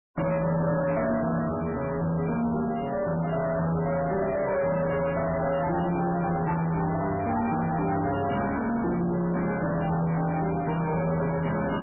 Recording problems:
lossy codec; MP3, log-spectral distance 4 dB, nothing above 2.4 kHz
distortion; soft clipping, signal-to-distortion ratio 7 dB

